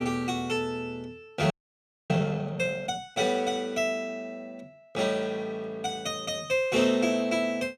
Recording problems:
frozen audio; at 1.5 s for 0.5 s

